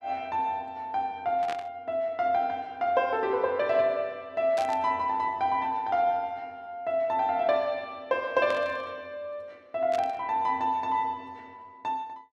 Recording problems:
burst of static; 4 times, first at 1.5 s; peak -7 dB vs average level

